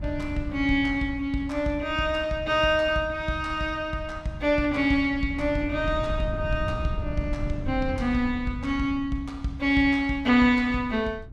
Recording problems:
wind on the microphone; below 120 Hz, SNR 12 dB

